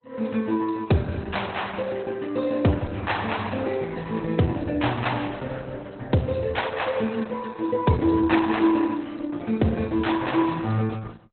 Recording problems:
lossy compression; Opus, log-spectral distance 5 dB, nothing above 4 kHz

